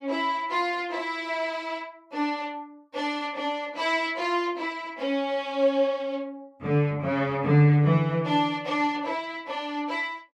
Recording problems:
none

